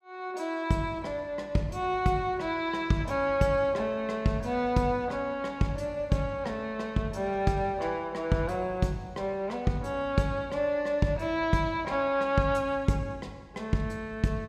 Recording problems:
none

